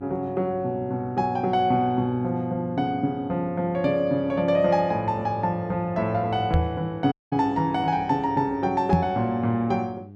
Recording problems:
hum; 50 Hz, harmonics up to 800 Hz, SNR 19 dB
microphone thump; at 6.5 s and at 9 s; peak +6 dB vs average level
audio cutting out; at 7 s

